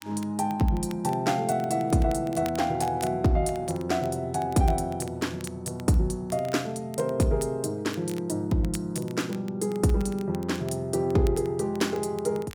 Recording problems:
crackling; vinyl, SNR 22 dB

